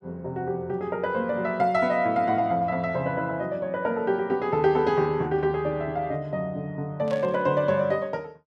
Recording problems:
burst of static; at 7 s; peak -13 dB vs average level

